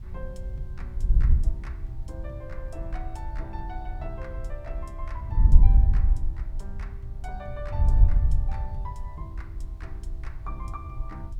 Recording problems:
background hiss; slope -3 dB per octave, SNR 25 dB
wind noise; below 64 Hz, SNR -14 dB

